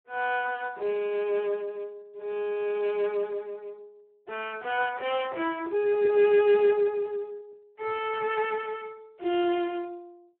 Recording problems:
phone line; 280 Hz to 3.3 kHz, Speex

